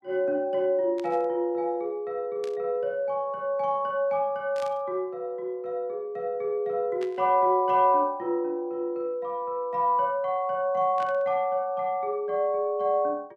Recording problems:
static burst; 5 times, first at 1 s; peak -13 dB vs average level

